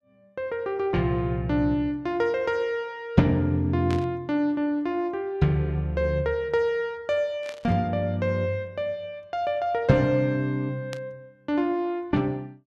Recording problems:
static burst; at 4 s, at 7.5 s and at 11 s; peak -8 dB vs average level

